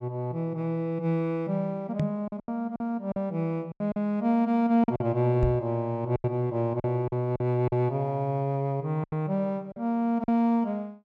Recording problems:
lost packets; 7% of the sound replaced, filled with silence
microphone thump; at 2 s and at 5.5 s; peak +4 dB vs average level

